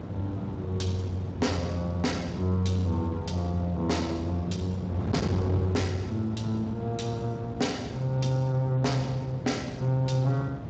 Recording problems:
lossy codec; Speex, log-spectral distance 3 dB, nothing above 7.3 kHz
distorted audio; soft clipping, signal-to-distortion ratio 11 dB
wind noise; below 370 Hz, SNR 8 dB

